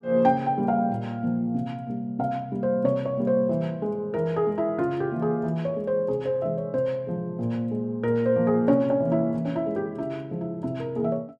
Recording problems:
none

